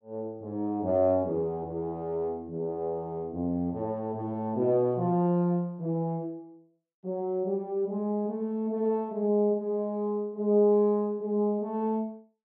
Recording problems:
none

